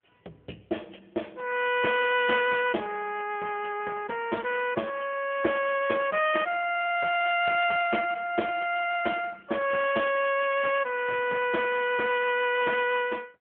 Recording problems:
telephone audio; 260 Hz to 3.3 kHz, AMR-NB

